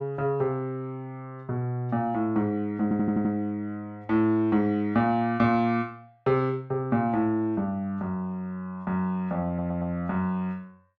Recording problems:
stutter; at 3 s and at 9.5 s

